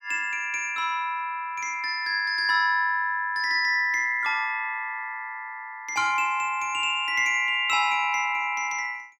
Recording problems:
none

